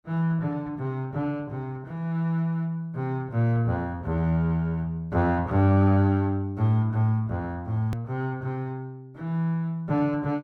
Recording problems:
hard cut with a click; at 8 s

